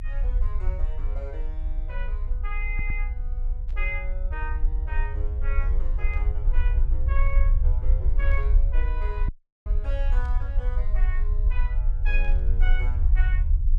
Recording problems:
low-frequency rumble; below 52 Hz, strongest tone 28 Hz, SNR -11 dB
audio stuttering; at 2.5 s
burst of static; 5 times, first at 3.5 s; peak -11 dB vs average level
audio cutting out; at 9.5 s

